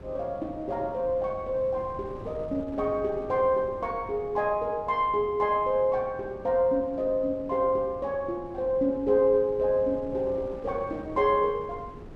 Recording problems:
wind on the microphone; below 400 Hz, SNR 18 dB

